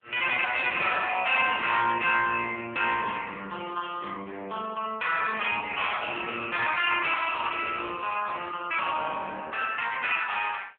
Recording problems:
phone line; 390 Hz to 3.3 kHz, AMR-NB

